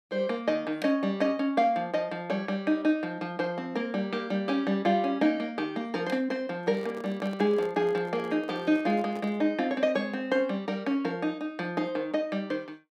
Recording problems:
handling noise; from 6.5 to 9.5 s; peak -8 dB vs average level

